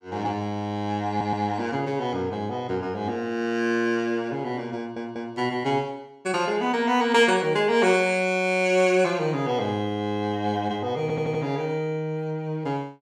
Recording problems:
audio stuttering; at 1 s, at 5 s and at 11 s

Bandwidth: 17 kHz